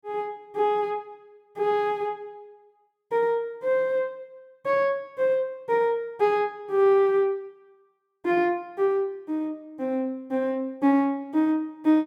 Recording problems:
none

